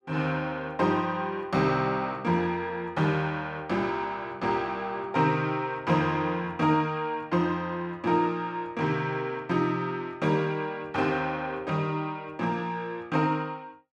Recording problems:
none

